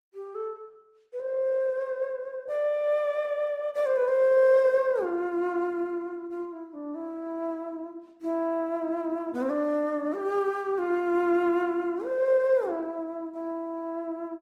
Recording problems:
lossy codec; Opus, log-spectral distance 2 dB

